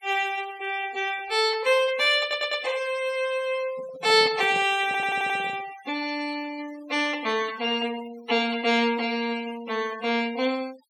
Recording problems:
denoising artefacts; signal-to-artefact ratio 18 dB
audio stuttering; at 2 s and at 5 s
microphone handling noise; from 3.5 to 6 s; peak -10 dB vs average level

